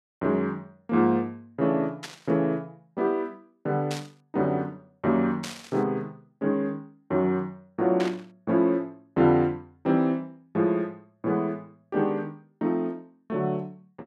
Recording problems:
burst of static; 4 times, first at 2 s; peak -3 dB vs average level

